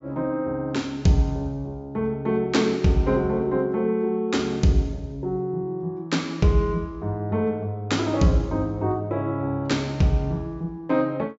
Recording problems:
treble missing; nothing above 8 kHz

